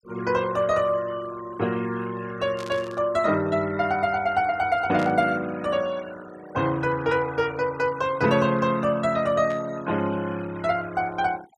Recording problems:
denoising artefacts; signal-to-artefact ratio 20 dB
static burst; at 2.5 s, at 5 s and at 9.5 s; peak -11 dB vs average level

